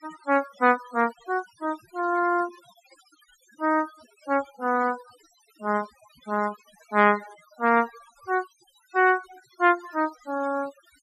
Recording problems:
noise reduction artefacts; signal-to-artefact ratio 19 dB

